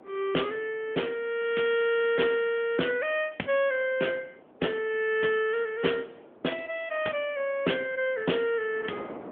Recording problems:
telephone audio; 220 Hz to 3.5 kHz, AMR-NB
wind noise; below 710 Hz, SNR 22 dB

